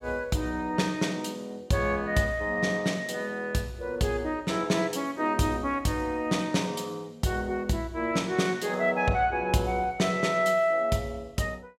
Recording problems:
none

